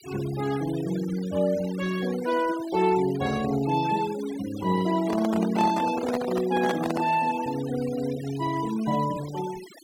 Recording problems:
noise reduction artefacts; signal-to-artefact ratio 15 dB
handling noise; from 5 to 7 s; peak +1 dB vs average level

